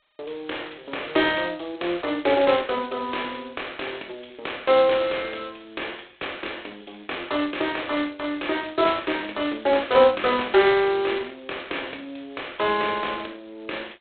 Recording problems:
telephone audio; 300 Hz to 3.9 kHz, G.726

